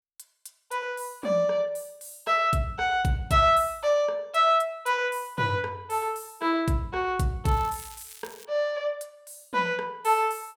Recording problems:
crackling; at 7.5 s; loose cable, SNR 20 dB

